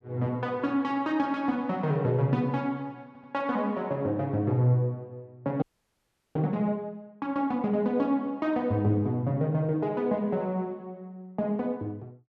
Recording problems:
audio stuttering; at 3 s
frozen audio; at 5.5 s for 0.5 s

